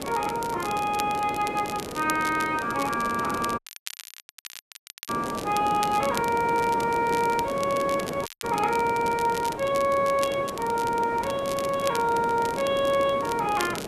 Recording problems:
hiss; slope -10 dB per octave, SNR 9 dB
crackling; vinyl, SNR 14 dB
audio cutting out; at 3.5 s for 1.5 s and at 8.5 s

